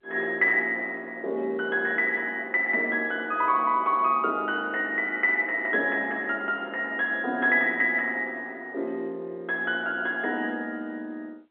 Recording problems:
phone line; 240 Hz to 3.3 kHz, G.711

